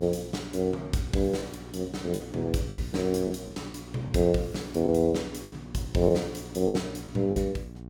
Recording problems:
electrical hum; 60 Hz, harmonics up to 780 Hz, SNR 15 dB
packet loss; 6% of the sound replaced, filled with the last packet

